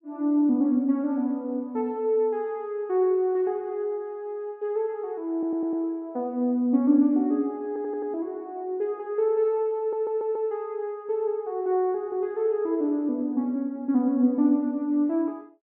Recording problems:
stutter; at 5.5 s, at 7.5 s and at 10 s

